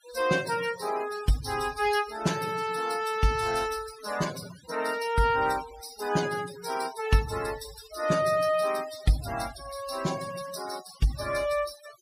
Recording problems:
denoising artefacts; signal-to-artefact ratio 13 dB

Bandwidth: 15.5 kHz